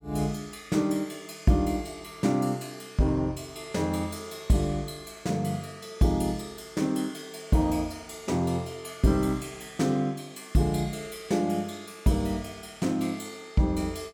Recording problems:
none

